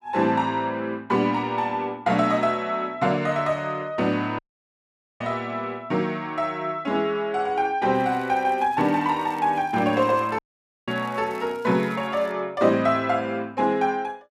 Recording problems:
audio cutting out; at 4.5 s for 1 s and at 10 s
crackling; from 8 to 12 s; loose cable, SNR 29 dB

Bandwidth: 14 kHz